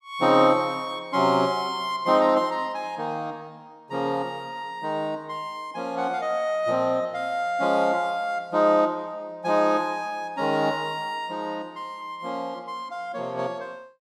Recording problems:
none

